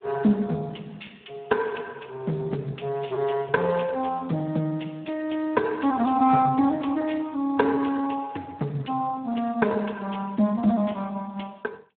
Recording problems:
telephone audio; 170 Hz to 3.6 kHz, Speex

